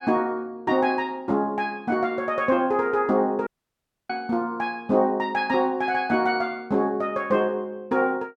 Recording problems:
audio cutting out; at 3.5 s for 0.5 s

